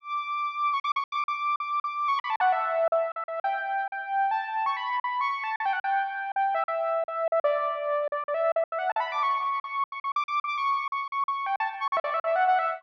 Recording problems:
lost packets; 13% of the sound replaced, filled with silence

